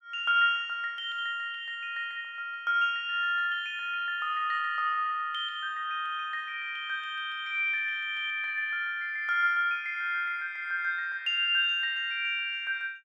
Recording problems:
none

